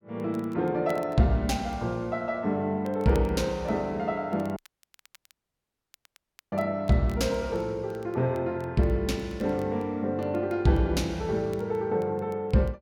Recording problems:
crackling; vinyl, SNR 29 dB
dropout; at 4.5 s for 2 s

